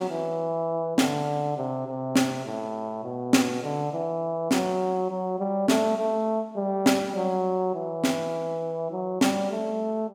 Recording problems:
none

